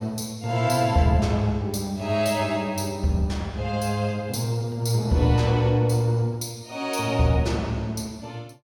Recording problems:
none

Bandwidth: 17.5 kHz